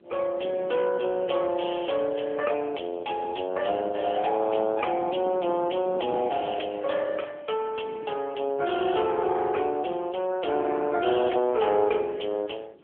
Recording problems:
phone line; 280 Hz to 3.3 kHz, AMR-NB
wind on the microphone; below 460 Hz, SNR 18 dB

